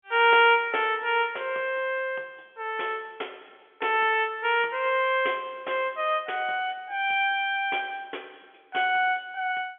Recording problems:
phone line; 320 Hz to 3.4 kHz, G.711

